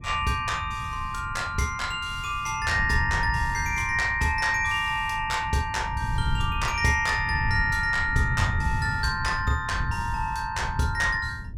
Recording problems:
wind on the microphone; below 120 Hz, SNR 8 dB

